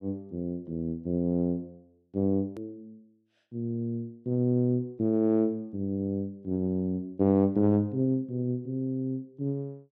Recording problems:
hard cut with a click; at 2.5 s

